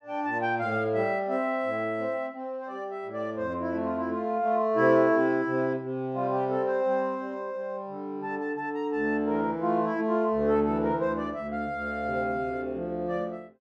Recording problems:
none

